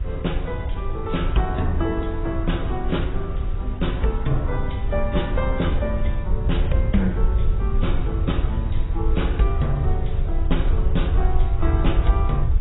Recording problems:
codec artefacts; AAC, then AAC, log-spectral distance 2 dB, nothing above 3.8 kHz
background hiss; SNR 19 dB
rumble; below 72 Hz, SNR -2 dB
wind on the microphone; below 270 Hz, SNR 18 dB

